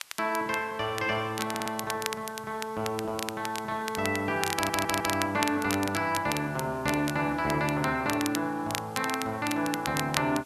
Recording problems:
background hiss; slope +2 dB per octave, SNR 24 dB
crackle; vinyl, SNR 7 dB
audio stuttering; at 1.5 s and at 4.5 s

